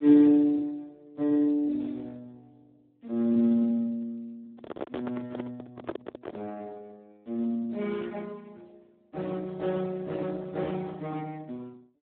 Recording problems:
telephone audio; 190 Hz to 2.3 kHz, Speex
microphone handling noise; from 4.5 to 6.5 s; peak -1 dB vs average level

